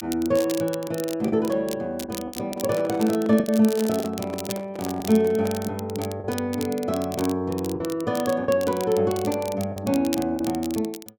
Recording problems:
crackling; vinyl, SNR 14 dB
lost packets; 5% of the sound replaced, filled with the last packet
handling noise; from 2.5 to 5.5 s; peak -7 dB vs average level

